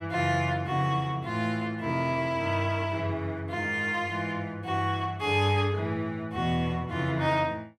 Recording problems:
none

